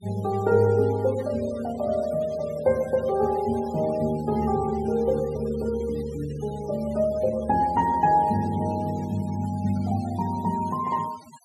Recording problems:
noise reduction artefacts; signal-to-artefact ratio 21 dB

